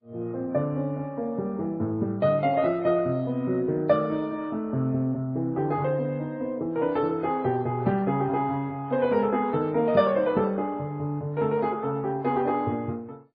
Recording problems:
lossy codec; MP2, then MP3, log-spectral distance 2 dB

